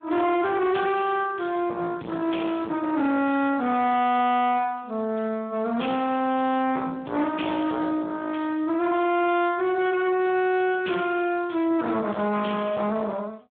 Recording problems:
telephone audio; 190 Hz to 3.5 kHz, Speex
distorted audio; soft clipping, signal-to-distortion ratio 7 dB

